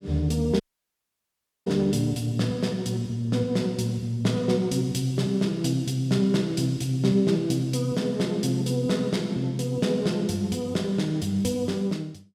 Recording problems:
dropout; at 0.5 s for 1 s

